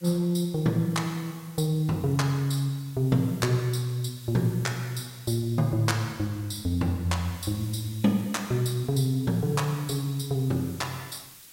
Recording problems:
background hiss; SNR 21 dB

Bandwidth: 16 kHz